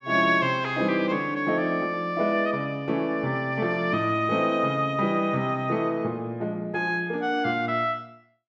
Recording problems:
none

